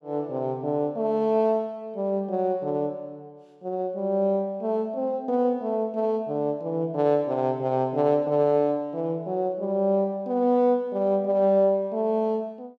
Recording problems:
none

